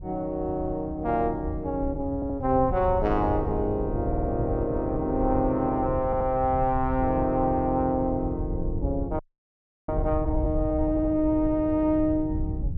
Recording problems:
wind on the microphone; below 96 Hz, SNR 8 dB
stutter; 4 times, first at 2 s
frozen audio; at 9 s for 0.5 s

